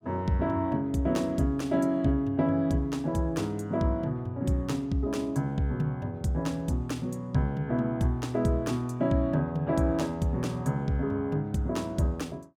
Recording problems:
none

